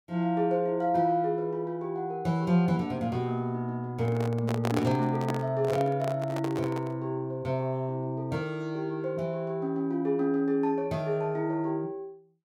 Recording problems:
microphone handling noise; from 4 to 7 s; peak +2 dB vs average level

